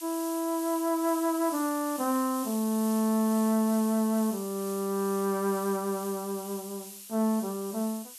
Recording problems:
background hiss; slope +4 dB per octave, SNR 12 dB

